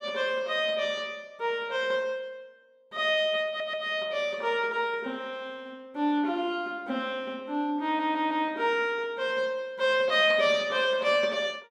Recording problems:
stutter; at 3.5 s and at 8 s

